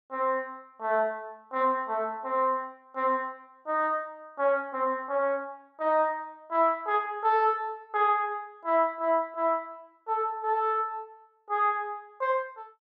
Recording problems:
none

